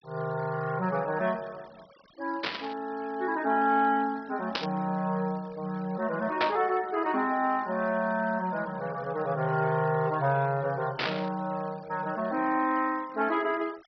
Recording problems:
low-pass filter; nothing above 5.5 kHz
noise reduction artefacts; signal-to-artefact ratio 24 dB
burst of static; 4 times, first at 2.5 s; peak +4 dB vs average level

